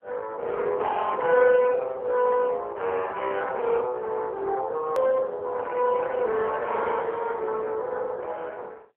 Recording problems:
telephone audio; 220 Hz to 3 kHz, AMR-NB
click at an edit; at 5 s

